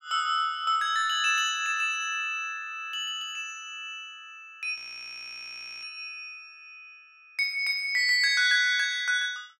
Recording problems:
frozen audio; at 5 s for 1 s

